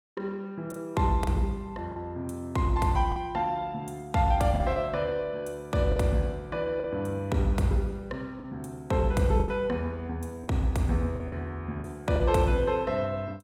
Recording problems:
packet loss; 5% of the sound replaced, filled with the last packet

